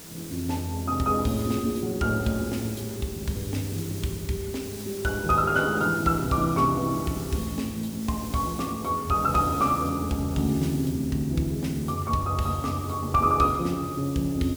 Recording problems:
hiss; SNR 15 dB

